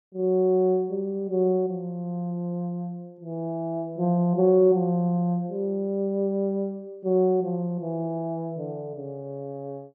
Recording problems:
none

